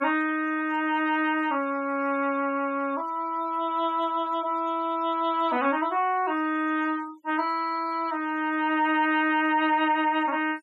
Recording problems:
noise reduction artefacts; signal-to-artefact ratio 23 dB

